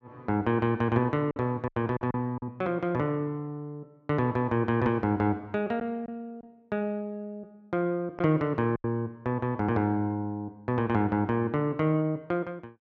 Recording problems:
lost packets; 3% of the sound replaced, filled with silence

